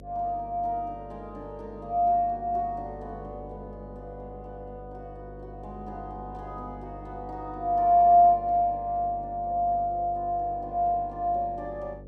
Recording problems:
hum; 50 Hz, harmonics up to 600 Hz, SNR 20 dB

